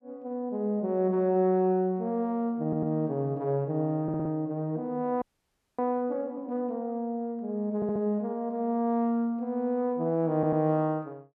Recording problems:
audio stuttering; 4 times, first at 2.5 s
frozen audio; at 5 s for 0.5 s

